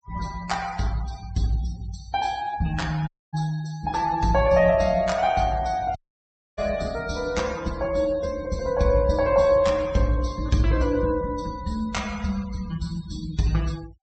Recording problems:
low-pass filter; nothing above 8 kHz
denoising artefacts; signal-to-artefact ratio 21 dB
dropout; at 3 s and at 6 s for 0.5 s

